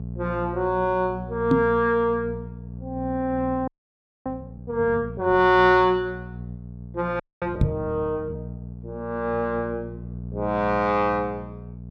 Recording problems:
hum; 60 Hz, harmonics up to 660 Hz, SNR 12 dB
knock on the microphone; at 1.5 s and at 7.5 s; peak +7 dB vs average level
audio freezing; at 3.5 s for 0.5 s and at 7 s

